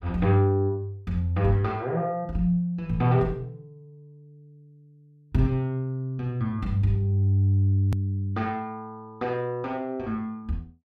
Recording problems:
hard cut with a click; at 8 s

